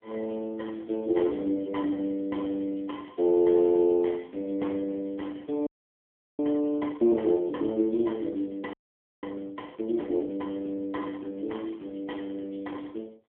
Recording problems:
telephone audio; 240 Hz to 3.8 kHz, AMR-NB
audio freezing; at 5.5 s for 0.5 s and at 8.5 s for 0.5 s

